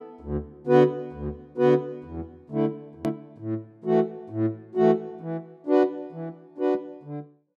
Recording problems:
hard cut with a click; at 3 s

